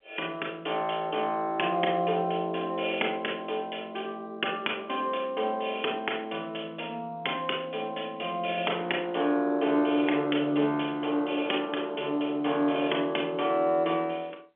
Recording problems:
telephone audio; 240 Hz to 3.4 kHz, G.711

